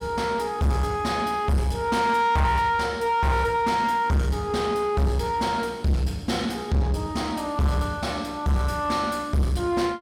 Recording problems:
distorted audio; soft clipping, signal-to-distortion ratio 6 dB

